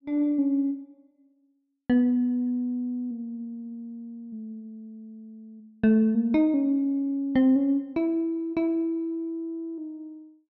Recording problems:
none

